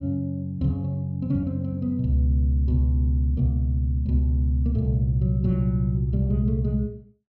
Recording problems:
none

